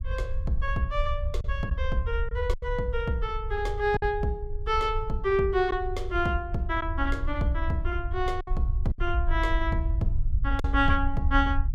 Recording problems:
low-frequency rumble; below 66 Hz, SNR 3 dB
lost packets; 3% of the sound replaced, filled with silence

